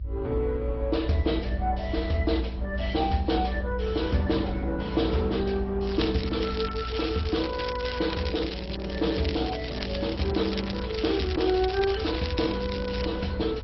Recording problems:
low-pass filter; nothing above 5.5 kHz
lossy codec; MP3, then Opus, log-spectral distance 6 dB
low-frequency rumble; below 68 Hz, strongest tone 60 Hz, SNR 5 dB
crackle; from 6 to 13 s; loose cable, SNR 9 dB

